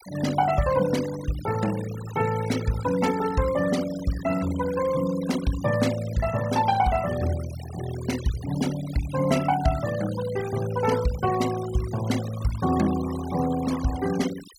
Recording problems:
denoising artefacts; signal-to-artefact ratio 14 dB

